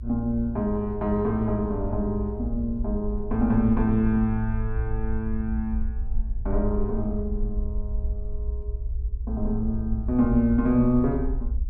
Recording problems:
low-frequency rumble; below 60 Hz, SNR 6 dB

